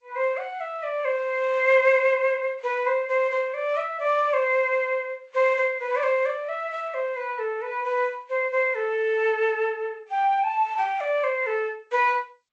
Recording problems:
lossy compression; Vorbis, then G.722, log-spectral distance 2 dB

